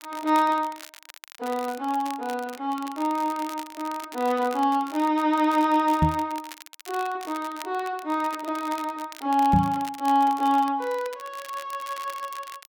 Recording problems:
crackle; vinyl, SNR 18 dB
microphone bump; at 6 s and at 9.5 s; peak +7 dB vs average level

